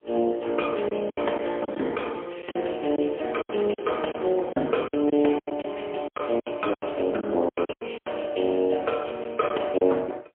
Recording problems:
telephone audio; 240 Hz to 3.3 kHz, AMR-NB, then MP3
packet loss; 11% of the sound replaced, filled with silence

